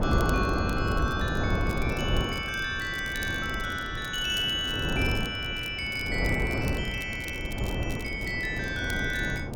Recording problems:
wind noise; below 390 Hz, SNR 2 dB
crackling; vinyl, SNR 18 dB

